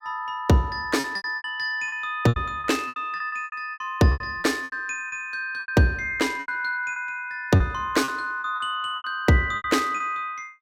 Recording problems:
packet loss; 14% of the sound replaced, filled with repeated pitch periods

